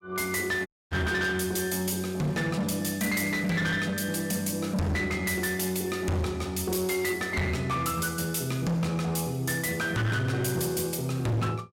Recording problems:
distorted audio; hard clipping, signal-to-distortion ratio 8 dB
dropout; at 0.5 s

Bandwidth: 16.5 kHz